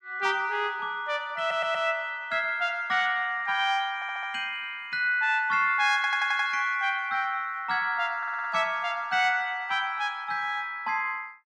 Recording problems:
stutter; 4 times, first at 1.5 s

